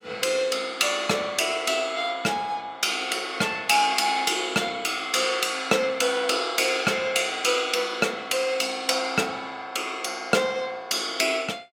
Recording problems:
none

